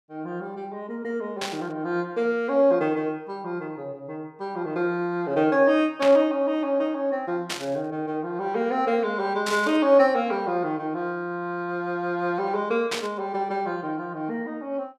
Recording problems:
burst of static; 5 times, first at 1.5 s; peak +1 dB vs average level

